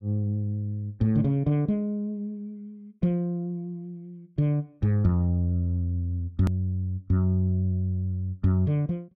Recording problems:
hard cut with a click; at 6.5 s

